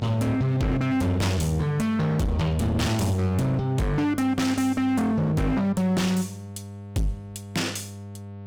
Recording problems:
distorted audio; hard clipping, uneven, signal-to-distortion ratio 7 dB
electrical hum; 50 Hz, harmonics up to 1.1 kHz, SNR 14 dB

